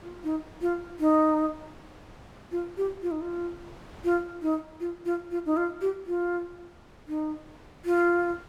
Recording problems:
wind on the microphone; below 1.1 kHz, SNR 23 dB

